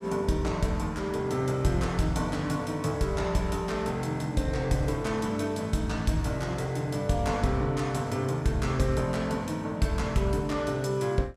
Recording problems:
none

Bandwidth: 15 kHz